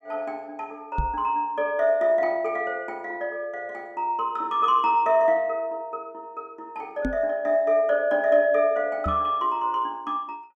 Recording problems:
microphone thump; at 1 s, at 7 s and at 9 s; peak 0 dB vs average level

